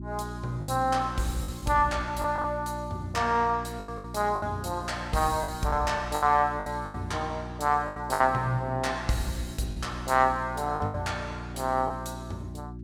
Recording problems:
hum; 60 Hz, harmonics up to 360 Hz, SNR 11 dB
lost packets; 8% of the sound replaced, filled with the last packet

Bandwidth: 17 kHz